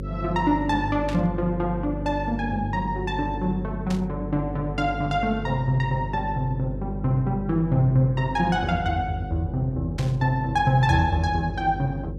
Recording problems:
electrical hum; 50 Hz, harmonics up to 550 Hz, SNR 8 dB
static burst; at 1 s, at 4 s and at 10 s; peak -7 dB vs average level

